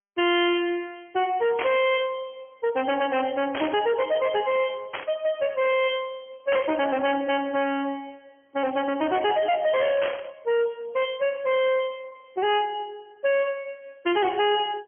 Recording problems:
telephone audio; 370 Hz to 3.3 kHz, AMR-NB, then MP3
distorted audio; soft clipping, signal-to-distortion ratio 5 dB
static burst; 5 times, first at 1.5 s; peak 0 dB vs average level

